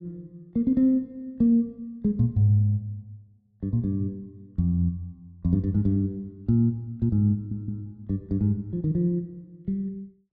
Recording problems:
stutter; at 7.5 s

